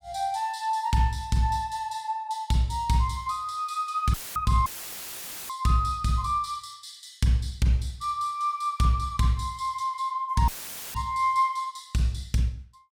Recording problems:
audio cutting out; at 4 s, at 4.5 s for 1 s and at 10 s; filled with static

